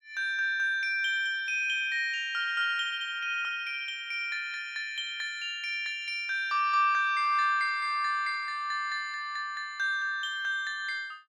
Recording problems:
none

